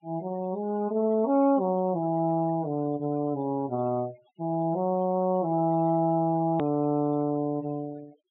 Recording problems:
treble missing; nothing above 4 kHz
denoising artefacts; signal-to-artefact ratio 26 dB
edit click; at 6.5 s

